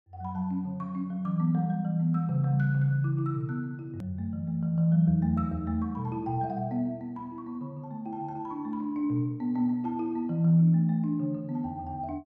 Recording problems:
edit click; at 4 s

